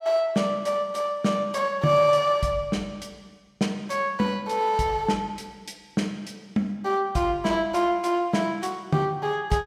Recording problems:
none

